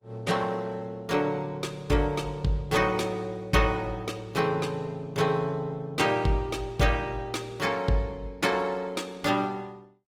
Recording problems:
codec artefacts; Opus, log-spectral distance 3 dB, nothing above 19 kHz

